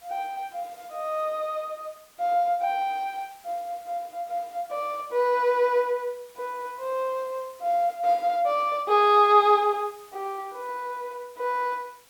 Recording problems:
hiss; slope 0 dB per octave, SNR 27 dB

